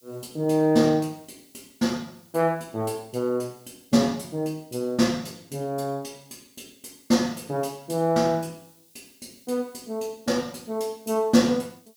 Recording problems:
hiss; SNR 30 dB

